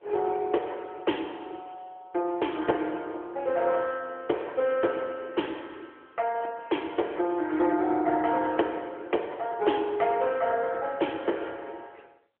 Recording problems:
phone line; 280 Hz to 3.3 kHz, AMR-NB

